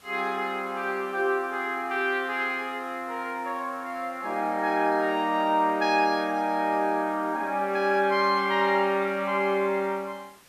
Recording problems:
hiss; slope -2 dB per octave, SNR 28 dB

